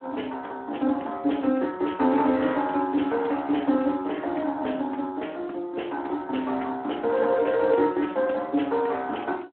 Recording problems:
phone line; 220 Hz to 3.5 kHz, Speex

